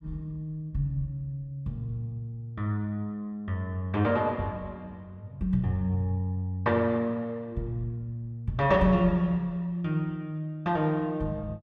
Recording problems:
none

